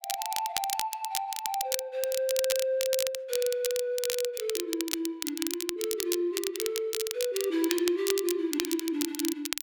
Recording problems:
crackle; vinyl, SNR 3 dB

